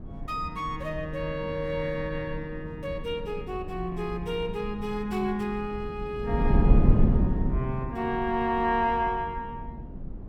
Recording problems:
wind on the microphone; below 170 Hz, SNR 1 dB

